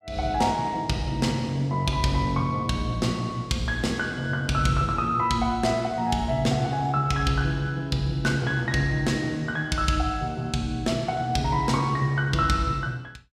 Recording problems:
none

